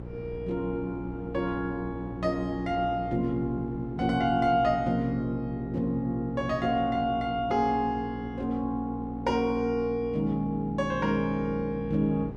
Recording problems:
hum; 60 Hz, harmonics up to 540 Hz, SNR 12 dB
wind on the microphone; below 420 Hz, SNR 20 dB

